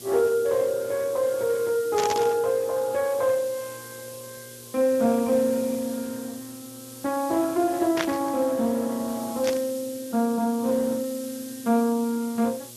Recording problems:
codec artefacts; Speex, log-spectral distance 3 dB
hum; 60 Hz, harmonics up to 1.2 kHz, SNR 24 dB
hiss; slope +6 dB per octave, SNR 16 dB
static burst; at 2 s, at 8 s and at 9.5 s; peak +2 dB vs average level

